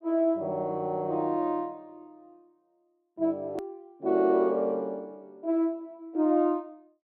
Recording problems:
edit click; at 3.5 s

